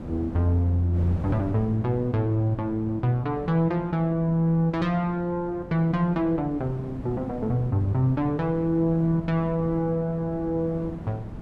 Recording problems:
wind on the microphone; below 300 Hz, SNR 14 dB

